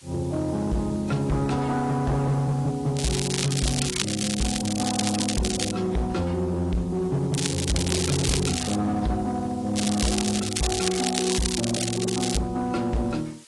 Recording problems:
lossy codec; AAC, log-spectral distance 8 dB, nothing above 10.4 kHz
distorted audio; hard clipping, signal-to-distortion ratio 7 dB
hiss; slope +2 dB per octave, SNR 23 dB
crackling; from 3 to 5.5 s, from 7.5 to 9 s and from 10 to 12 s; loose cable, SNR 3 dB

